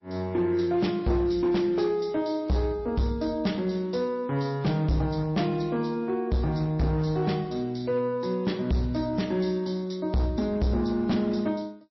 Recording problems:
codec artefacts; MP3, log-spectral distance 2 dB, nothing above 5.7 kHz
distorted audio; hard clipping, signal-to-distortion ratio 11 dB

